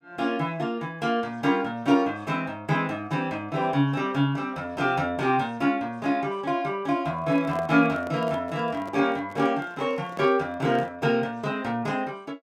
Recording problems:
microphone handling noise; from 7 to 11 s; peak -9 dB vs average level

